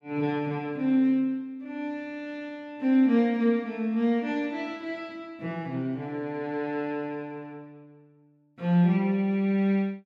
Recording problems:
none

